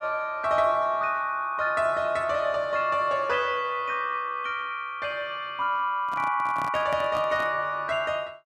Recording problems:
microphone handling noise; from 6 to 7.5 s; peak -7 dB vs average level

